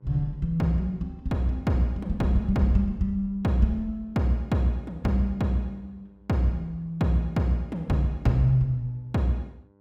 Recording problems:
mains hum; 50 Hz, harmonics up to 1.5 kHz, SNR 34 dB

